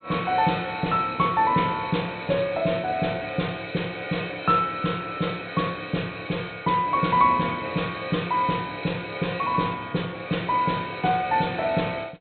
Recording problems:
low-pass filter; nothing above 4 kHz

